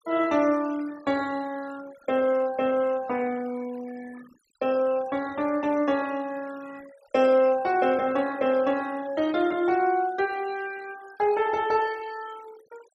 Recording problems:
noise reduction artefacts; signal-to-artefact ratio 21 dB

